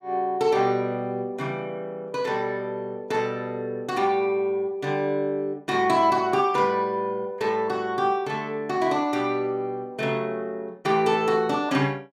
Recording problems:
none

